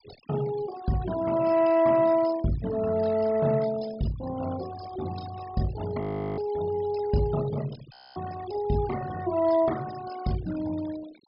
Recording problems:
treble missing; nothing above 5.5 kHz
denoising artefacts; signal-to-artefact ratio 17 dB
audio freezing; at 6 s and at 8 s

